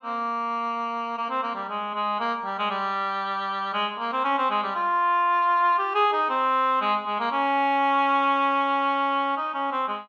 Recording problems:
none

